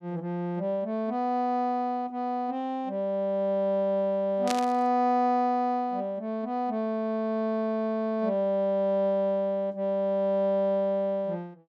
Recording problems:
burst of static; at 4.5 s; peak 0 dB vs average level

